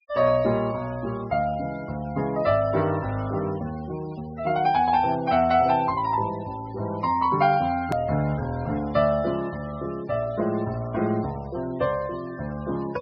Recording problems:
treble missing; nothing above 5.5 kHz
denoising artefacts; signal-to-artefact ratio 22 dB
hard cut with a click; at 8 s

